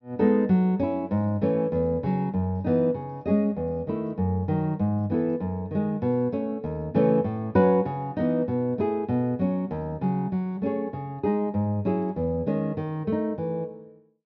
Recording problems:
low-pass filter; nothing above 6.2 kHz

